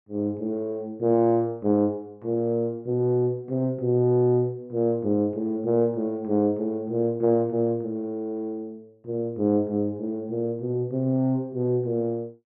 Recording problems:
none

